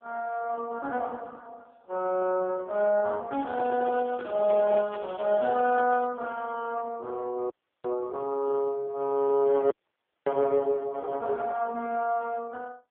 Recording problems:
phone line; 300 Hz to 2.2 kHz, AMR-NB
crackle; from 3.5 to 6 s; loose cable, SNR 23 dB
microphone handling noise; from 3.5 to 5 s; peak -6 dB vs average level
dropout; at 7.5 s and at 9.5 s for 0.5 s

